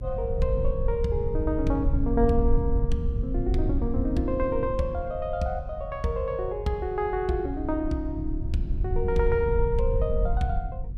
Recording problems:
rumble; below 76 Hz, SNR 2 dB

